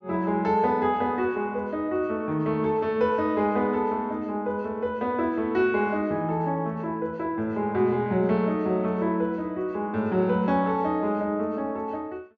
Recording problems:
treble missing; nothing above 7.4 kHz

